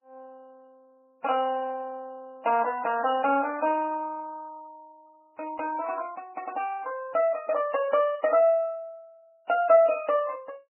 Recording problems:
codec artefacts; MP3, then Vorbis, log-spectral distance 2 dB, nothing above 2.6 kHz

